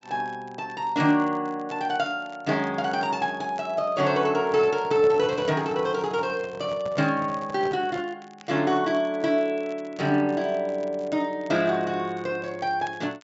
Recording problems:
treble cut off; nothing above 8 kHz
crackling; vinyl, SNR 28 dB
handling noise; from 4.5 to 8 s; peak -8 dB vs average level

